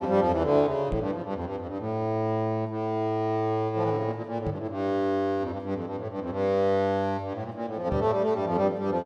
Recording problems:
microphone thump; at 1 s, at 4.5 s and at 8 s; peak -1 dB vs average level

